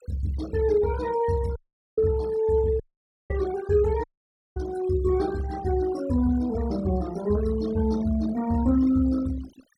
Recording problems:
noise reduction artefacts; signal-to-artefact ratio 20 dB
dropout; at 1.5 s, at 3 s for 0.5 s and at 4 s for 0.5 s

